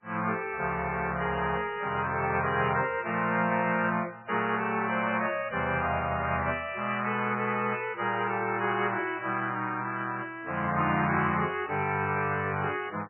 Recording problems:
lossy codec; MP3, log-spectral distance 3 dB, nothing above 2.4 kHz

